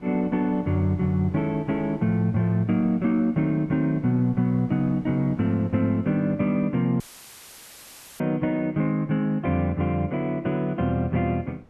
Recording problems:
wind on the microphone; below 550 Hz, SNR 25 dB
audio cutting out; at 7 s for 1 s; filled with static

